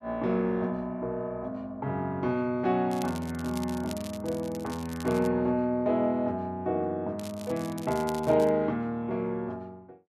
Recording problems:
crackle; from 3 to 5.5 s and from 7 to 8.5 s; loose cable, SNR 17 dB

